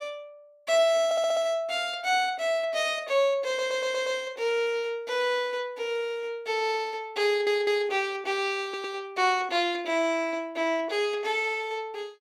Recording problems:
stutter; 4 times, first at 1 s

